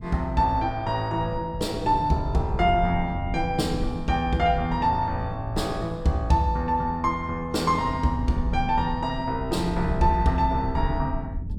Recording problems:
rumble; below 120 Hz, SNR 10 dB

